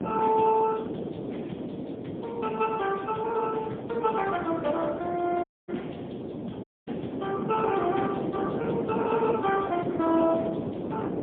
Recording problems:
phone line; 190 Hz to 3.3 kHz, AMR-NB, then MP3
wind noise; below 490 Hz, SNR 5 dB
dropout; at 5.5 s and at 6.5 s

